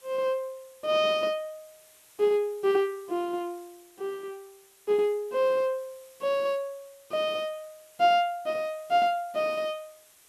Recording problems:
hiss; slope 0 dB per octave, SNR 27 dB

